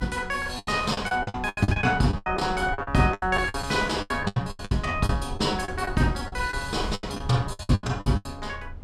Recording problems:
low-frequency rumble; below 86 Hz, SNR 13 dB
lost packets; 19% of the sound replaced, filled with the last packet

